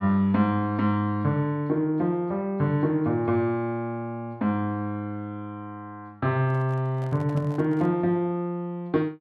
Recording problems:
microphone handling noise; from 6.5 to 8 s; peak -12 dB vs average level

